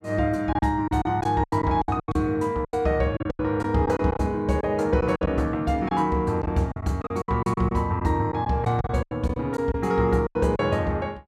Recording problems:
packet loss; 12% of the sound replaced, filled with silence

